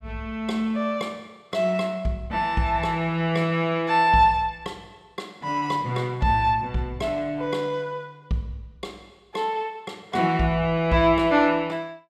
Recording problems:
none

